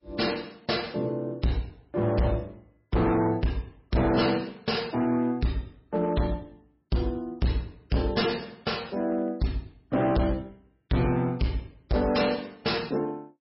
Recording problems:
lossy compression; MP3, log-spectral distance 4 dB, nothing above 5.3 kHz
distortion; hard clipping, signal-to-distortion ratio 7 dB

